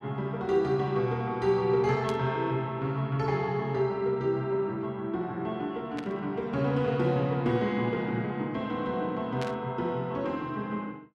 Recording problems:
burst of static; at 2 s, at 6 s and at 9.5 s; peak -5 dB vs average level

